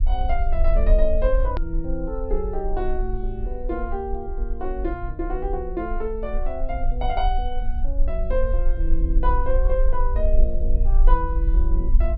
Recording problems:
treble cut off; nothing above 5.5 kHz
low-frequency rumble; below 42 Hz, strongest tone 24 Hz, SNR -3 dB
click at an edit; at 1.5 s

